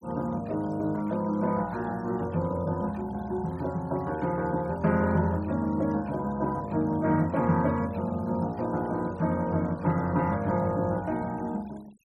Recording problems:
denoising artefacts; signal-to-artefact ratio 26 dB

